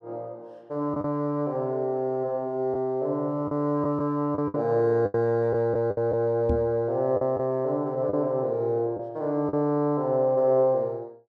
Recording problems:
packet loss; 5% of the sound replaced, filled with the last packet
knock on the microphone; at 6.5 s; peak +2 dB vs average level

